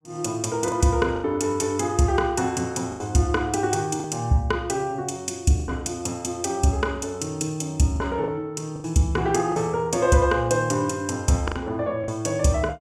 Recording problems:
lost packets; 5% of the sound replaced, filled with the last packet

